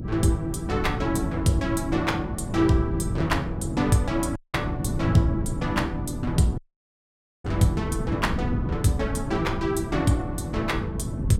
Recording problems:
mains hum; 50 Hz, harmonics up to 350 Hz, SNR 18 dB
wind noise; below 200 Hz, SNR 5 dB
audio cutting out; at 4.5 s and at 6.5 s for 1 s

